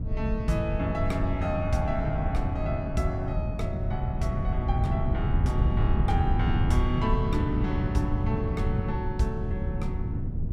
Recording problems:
rumble; below 130 Hz, SNR -1 dB

